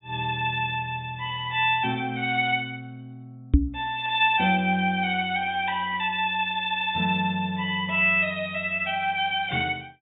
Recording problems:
low-pass filter; nothing above 4 kHz
microphone bump; at 3.5 s; peak +10 dB vs average level

